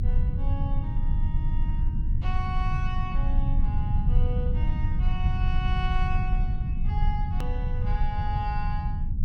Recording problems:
low-frequency rumble; below 84 Hz, strongest tone 24 Hz, SNR -9 dB
click at an edit; at 7.5 s

